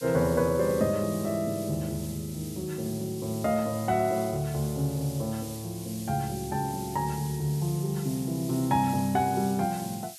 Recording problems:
hiss; slope +9 dB per octave, SNR 14 dB

